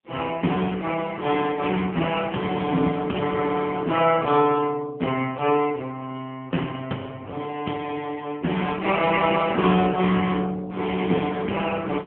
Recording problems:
telephone audio; 150 Hz to 3.2 kHz, AMR-NB

